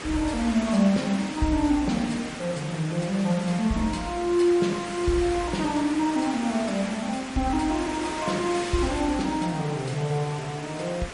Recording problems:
lossy compression; MP3, log-spectral distance 4 dB, nothing above 10.4 kHz
hiss; slope -3 dB per octave, SNR 10 dB

